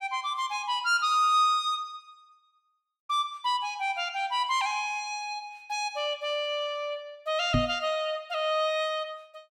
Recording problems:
microphone bump; at 7.5 s; peak +5 dB vs average level

